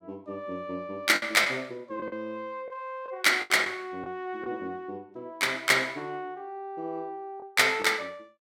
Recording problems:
packet loss; 4% of the sound replaced, filled with the last packet

